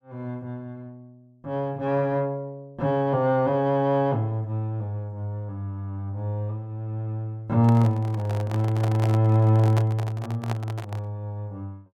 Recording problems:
handling noise; from 7.5 to 11 s; peak -2 dB vs average level

